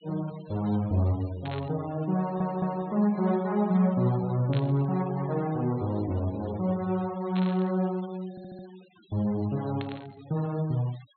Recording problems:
low-pass filter; nothing above 4.3 kHz
denoising artefacts; signal-to-artefact ratio 22 dB
burst of static; 4 times, first at 1.5 s; peak -8 dB vs average level
audio stuttering; at 2 s and at 8.5 s

